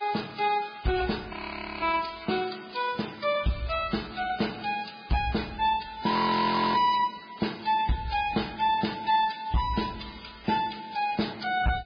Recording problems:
codec artefacts; MP3, then Vorbis, log-spectral distance 7 dB
distortion; hard clipping, signal-to-distortion ratio 11 dB
frozen audio; at 1.5 s and at 6 s for 0.5 s

